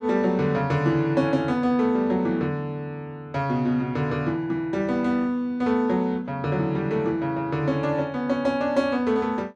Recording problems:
none

